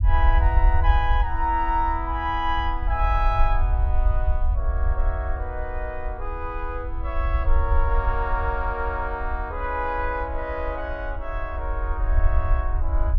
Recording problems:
rumble; below 62 Hz, SNR -1 dB

